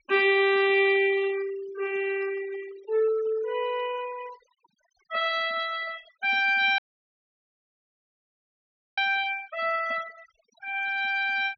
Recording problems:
low-pass filter; nothing above 6.3 kHz
denoising artefacts; signal-to-artefact ratio 19 dB
dropout; at 7 s for 2 s

